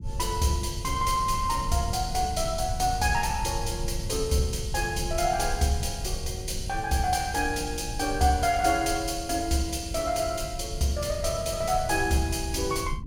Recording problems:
rumble; below 100 Hz, SNR 9 dB

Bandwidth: 16.5 kHz